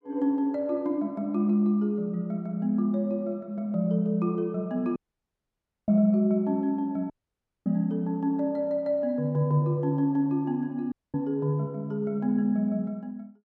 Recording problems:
dropout; at 5 s for 1 s, at 7 s for 0.5 s and at 11 s

